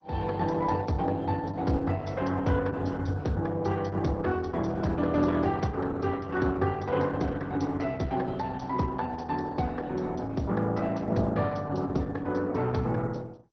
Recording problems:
lossy codec; MP2, then Opus, log-spectral distance 4 dB

